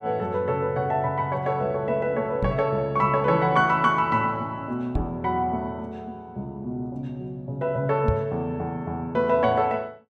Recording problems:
microphone bump; at 2.5 s, at 5 s and at 8 s; peak +4 dB vs average level

